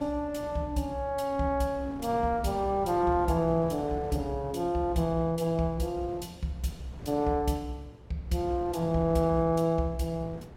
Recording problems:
wind noise; below 430 Hz, SNR 16 dB

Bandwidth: 16.5 kHz